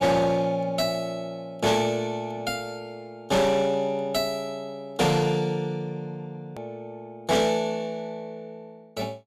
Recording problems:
distortion; hard clipping, uneven, signal-to-distortion ratio 11 dB
click at an edit; at 6.5 s

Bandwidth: 14.5 kHz